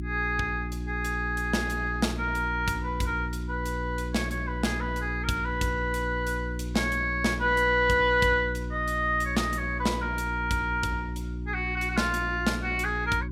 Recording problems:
hum; 60 Hz, harmonics up to 360 Hz, SNR 6 dB

